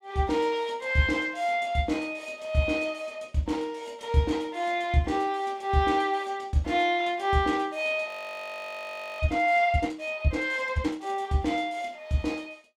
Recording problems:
audio freezing; at 8 s for 1 s

